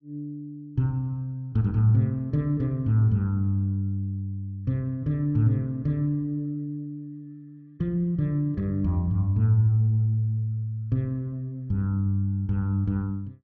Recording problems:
none

